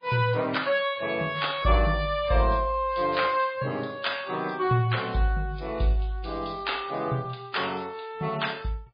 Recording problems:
lossy codec; MP3, log-spectral distance 4 dB

